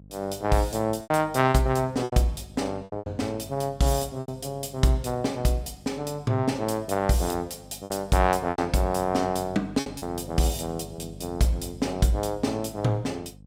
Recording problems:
hum; 50 Hz, harmonics up to 550 Hz, SNR 20 dB
lost packets; 6% of the sound replaced, filled with repeated pitch periods

